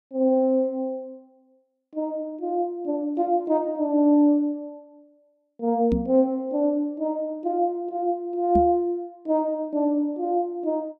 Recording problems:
microphone bump; at 6 s and at 8.5 s; peak +2 dB vs average level

